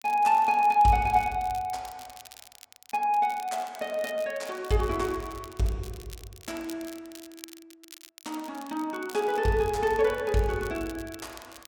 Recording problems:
crackling; vinyl, SNR 21 dB

